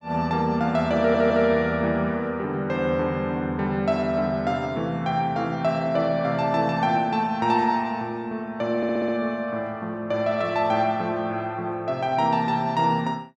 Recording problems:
audio stuttering; at 1 s and at 9 s

